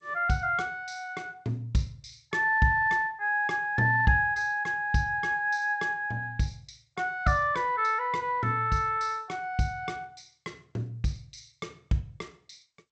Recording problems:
codec artefacts; G.722, log-spectral distance 2 dB, nothing above 7.8 kHz

